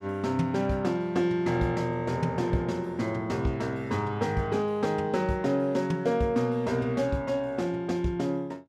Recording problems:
none

